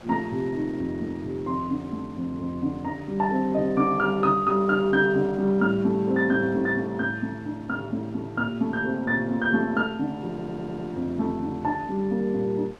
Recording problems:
wind on the microphone; below 1.4 kHz, SNR 23 dB
stutter; at 10 s

